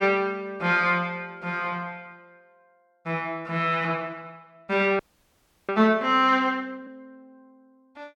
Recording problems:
frozen audio; at 5 s for 0.5 s

